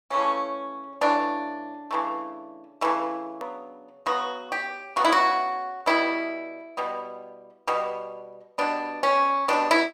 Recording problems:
edit click; at 3.5 s

